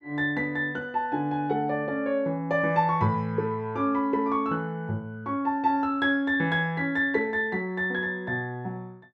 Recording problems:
none

